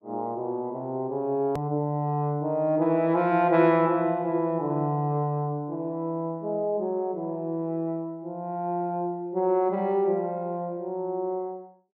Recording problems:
edit click; at 1.5 s

